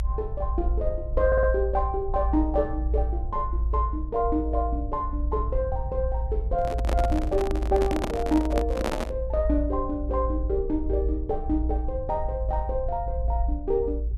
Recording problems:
low-frequency rumble; below 58 Hz, strongest tone 56 Hz, SNR 2 dB
stutter; at 1.5 s
handling noise; from 6.5 to 9 s; peak +4 dB vs average level

